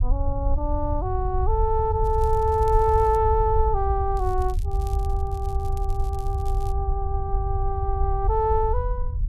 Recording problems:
rumble; below 74 Hz, SNR 2 dB
crackling; from 2 to 3 s and from 4 to 6.5 s; loose cable, SNR 26 dB

